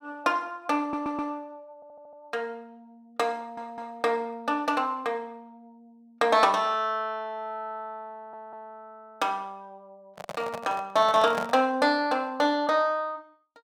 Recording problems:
audio stuttering; 4 times, first at 1 s
microphone handling noise; from 10 to 12 s; peak 0 dB vs average level

